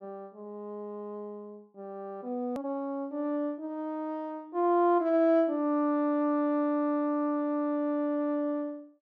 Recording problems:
edit click; at 2.5 s

